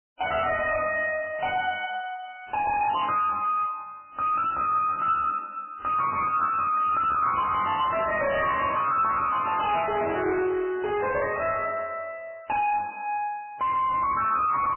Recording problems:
lossy codec; MP3, log-spectral distance 5 dB, nothing above 2.5 kHz
distortion; hard clipping, uneven, signal-to-distortion ratio 6 dB

